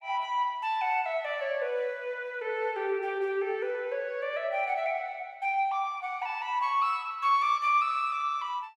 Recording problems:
none

